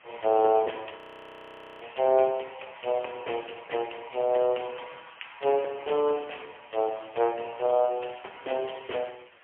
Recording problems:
phone line; 340 Hz to 3.2 kHz, AMR-NB, then MP3
hiss; SNR 27 dB
frozen audio; at 1 s for 1 s

